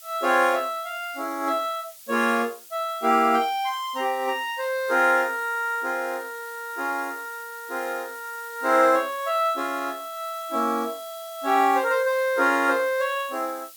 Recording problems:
hiss; slope +4 dB per octave, SNR 19 dB

